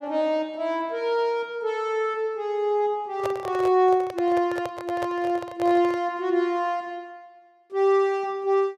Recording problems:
microphone handling noise; from 3 to 6 s; peak -3 dB vs average level

